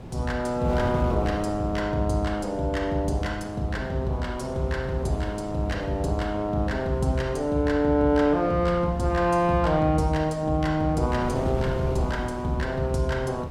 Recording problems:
wind noise; below 420 Hz, SNR 12 dB

